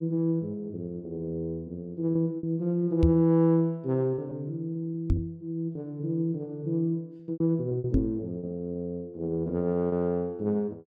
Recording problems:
lost packets; 5% of the sound replaced, filled with repeated pitch periods
microphone thump; at 3 s, at 5 s and at 8 s; peak +8 dB vs average level

